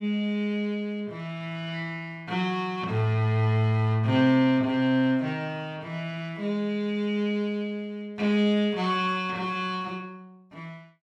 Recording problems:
none

